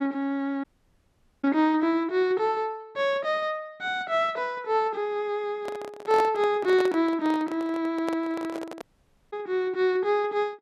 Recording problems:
dropout; at 0.5 s for 1 s and at 9 s for 0.5 s
handling noise; from 5.5 to 9 s; peak -1 dB vs average level

